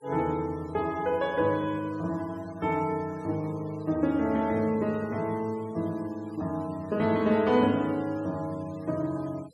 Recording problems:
noise reduction artefacts; signal-to-artefact ratio 23 dB

